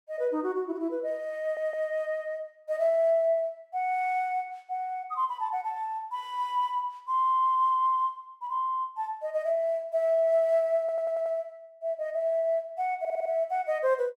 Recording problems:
stutter; at 1.5 s, at 11 s and at 13 s

